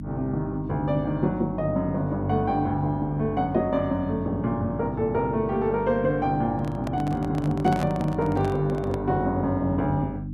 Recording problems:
hum; 50 Hz, harmonics up to 300 Hz, SNR 9 dB
handling noise; from 6.5 to 9 s; peak -3 dB vs average level

